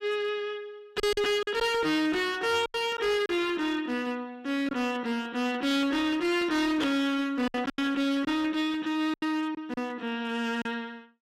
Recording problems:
distortion; hard clipping, uneven, signal-to-distortion ratio 7 dB
lost packets; 5% of the sound replaced, filled with silence

